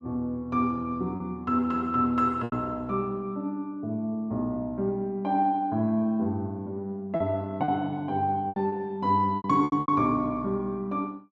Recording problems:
packet loss; 5% of the sound replaced, filled with repeated pitch periods

